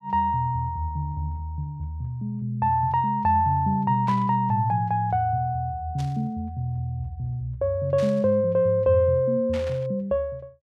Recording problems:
burst of static; 4 times, first at 4 s; peak -11 dB vs average level

